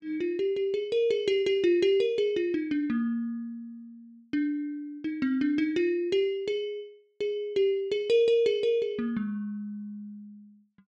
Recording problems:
none

